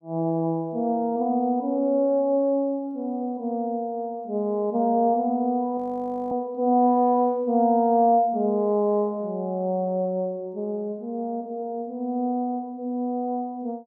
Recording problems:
frozen audio; at 6 s for 0.5 s

